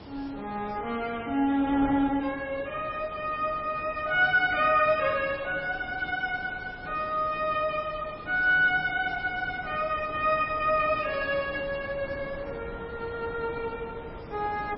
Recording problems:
codec artefacts; MP3, log-spectral distance 6 dB, nothing above 5.2 kHz
background hiss; SNR 26 dB
wind noise; below 730 Hz, SNR 17 dB

